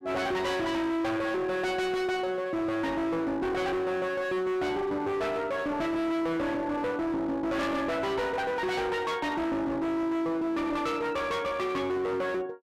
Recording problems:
distorted audio; hard clipping, signal-to-distortion ratio 7 dB

